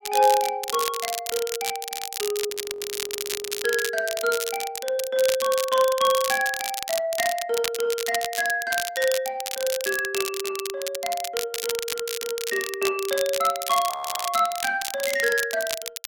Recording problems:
crackle; vinyl, SNR 5 dB
frozen audio; at 2.5 s for 1 s and at 14 s

